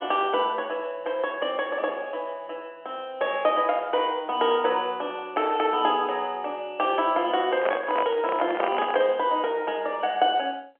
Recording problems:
telephone audio; 260 Hz to 3.1 kHz, G.711
microphone handling noise; from 7.5 to 9 s; peak +2 dB vs average level

